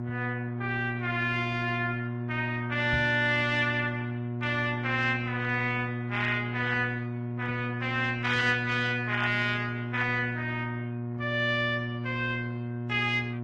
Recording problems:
lossy codec; Opus, then AAC, log-spectral distance 3 dB
electrical hum; 60 Hz, harmonics up to 720 Hz, SNR 5 dB
microphone bump; at 3 s; peak -2 dB vs average level

